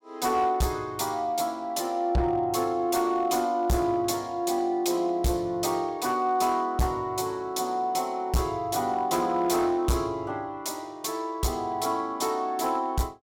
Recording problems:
distorted audio; hard clipping, uneven, signal-to-distortion ratio 12 dB

